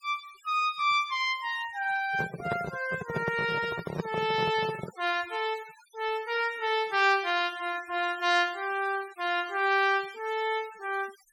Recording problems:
denoising artefacts; signal-to-artefact ratio 19 dB
handling noise; from 2 to 5 s; peak +1 dB vs average level

